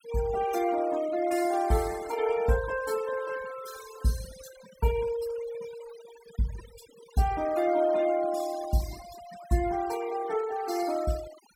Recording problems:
denoising artefacts; signal-to-artefact ratio 16 dB

